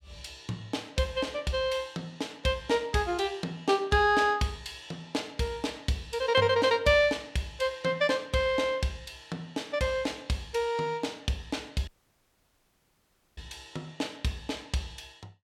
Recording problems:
audio cutting out; at 12 s for 1.5 s

